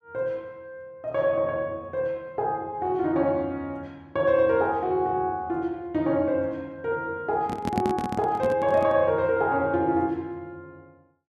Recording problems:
microphone handling noise; from 7.5 to 9 s; peak +3 dB vs average level

